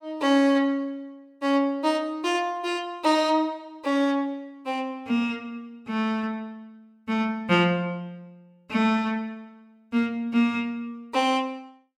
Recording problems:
none

